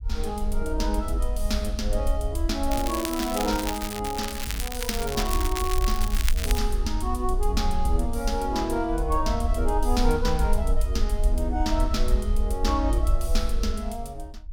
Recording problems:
rumble; below 54 Hz, SNR 1 dB
crackling; from 2.5 to 6.5 s; loose cable, SNR 4 dB

